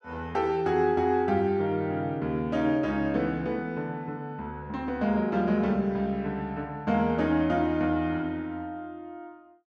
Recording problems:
none

